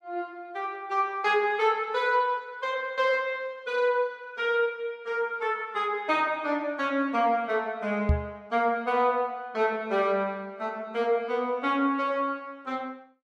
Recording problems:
microphone thump; at 8 s; peak +7 dB vs average level

